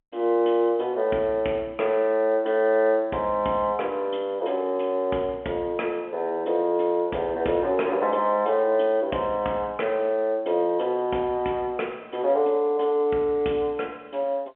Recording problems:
phone line; 240 Hz to 3.6 kHz, G.711

